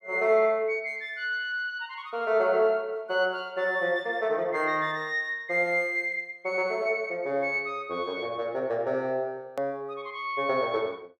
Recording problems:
edit click; at 9.5 s

